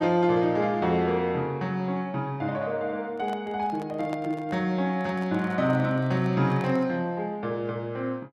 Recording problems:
handling noise; from 3 to 7 s; peak -7 dB vs average level

